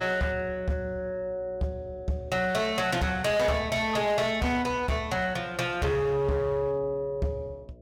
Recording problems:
distortion; hard clipping, signal-to-distortion ratio 10 dB
hum; 60 Hz, harmonics up to 660 Hz, SNR 23 dB

